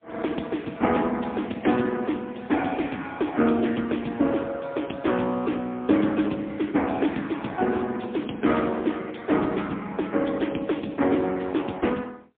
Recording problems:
phone line; 170 Hz to 3.5 kHz, AMR-NB, then MP3

